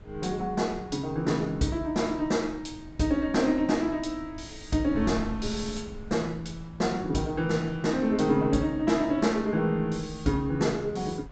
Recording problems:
treble missing; nothing above 8 kHz
wind noise; below 130 Hz, SNR 18 dB

